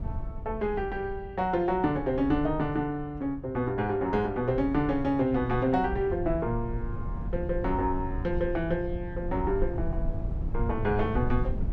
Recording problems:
wind noise; below 94 Hz, SNR 8 dB

